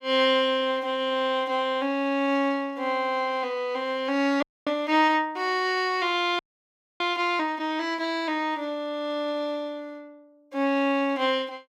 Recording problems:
frozen audio; at 4.5 s and at 6.5 s for 0.5 s

